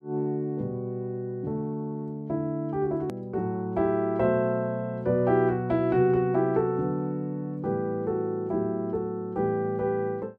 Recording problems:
edit click; at 3 s

